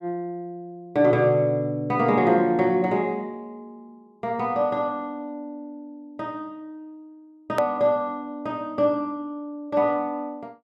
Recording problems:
hard cut with a click; at 7.5 s

